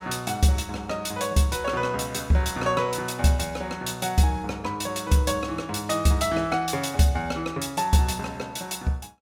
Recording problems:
none

